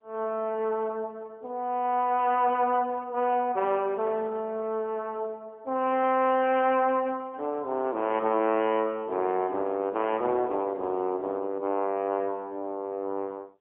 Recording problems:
telephone audio; 280 Hz to 3.1 kHz, AMR-NB, then MP3

